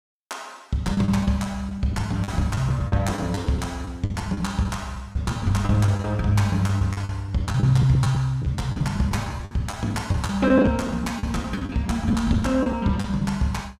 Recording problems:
lost packets; 13% of the sound replaced, filled with the last packet

